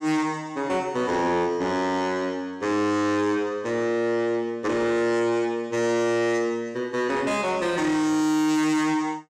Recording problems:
distorted audio; soft clipping, signal-to-distortion ratio 11 dB

